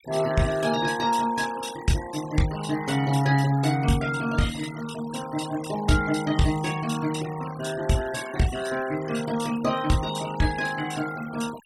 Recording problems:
noise reduction artefacts; signal-to-artefact ratio 15 dB

